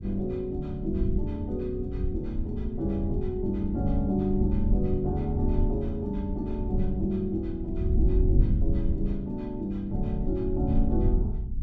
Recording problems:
rumble; below 84 Hz, SNR 1 dB

